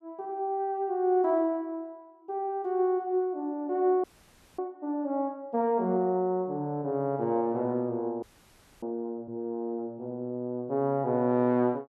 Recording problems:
frozen audio; at 4 s for 0.5 s and at 8 s for 0.5 s

